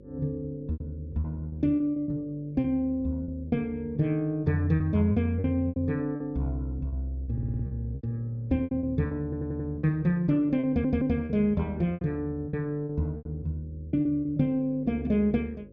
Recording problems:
electrical hum; 50 Hz, harmonics up to 550 Hz, SNR 23 dB
packet loss; 10% of the sound replaced, filled with repeated pitch periods
audio stuttering; at 7.5 s, at 9 s and at 11 s

